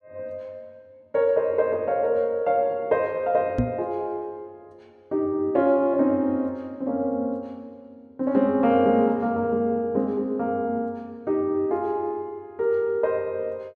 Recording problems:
knock on the microphone; at 3.5 s; peak +5 dB vs average level

